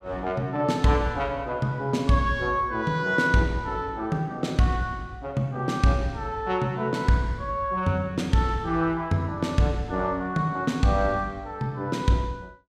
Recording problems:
none

